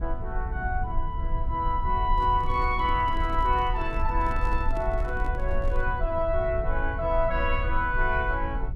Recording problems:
rumble; below 58 Hz, strongest tone 22 Hz, SNR 4 dB
microphone handling noise; from 2 to 6 s; peak -8 dB vs average level

